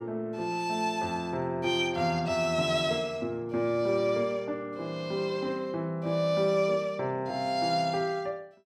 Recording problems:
none

